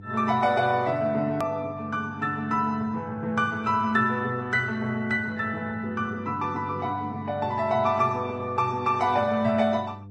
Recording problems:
lossy codec; MP3, then Vorbis, log-spectral distance 2 dB, nothing above 13.1 kHz
electrical hum; 50 Hz, harmonics up to 500 Hz, SNR 17 dB
edit click; at 1.5 s

